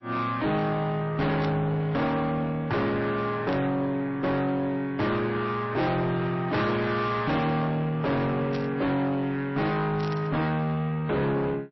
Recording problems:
codec artefacts; MP3, log-spectral distance 2 dB, nothing above 5.7 kHz
distorted audio; soft clipping, signal-to-distortion ratio 7 dB
static burst; 4 times, first at 1.5 s; peak -9 dB vs average level

